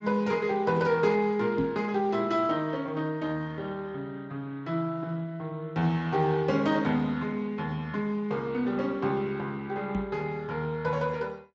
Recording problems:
lossy codec; Speex, log-spectral distance 2 dB, nothing above 7.3 kHz
knock on the microphone; at 1.5 s and at 10 s; peak +3 dB vs average level

